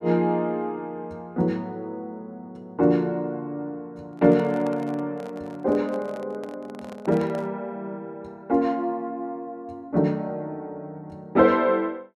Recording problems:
microphone handling noise; from 4 to 7.5 s; peak -9 dB vs average level

